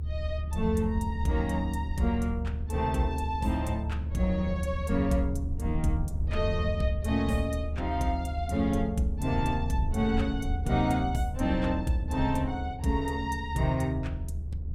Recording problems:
low-frequency rumble; below 76 Hz, strongest tone 74 Hz, SNR 4 dB

